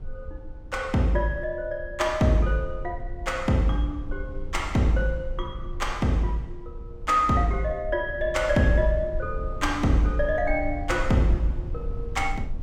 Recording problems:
rumble; below 64 Hz, SNR 11 dB

